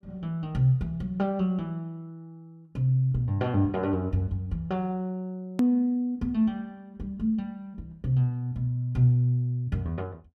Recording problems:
hard cut with a click; at 5.5 s

